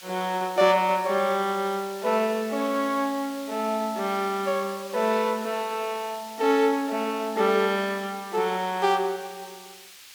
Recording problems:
background hiss; SNR 17 dB

